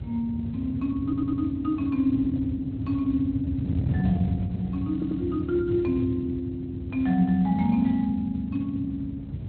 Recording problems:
lossy codec; Speex, log-spectral distance 2 dB
wind on the microphone; below 170 Hz, SNR 6 dB
stutter; at 1 s and at 5 s

